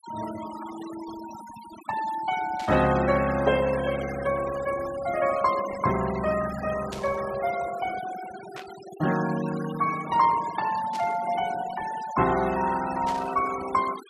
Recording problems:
denoising artefacts; signal-to-artefact ratio 14 dB
static burst; 5 times, first at 2.5 s; peak -8 dB vs average level

